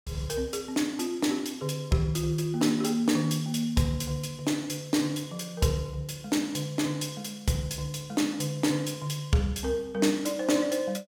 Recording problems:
none

